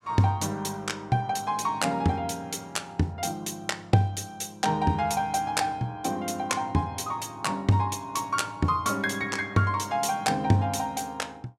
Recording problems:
none

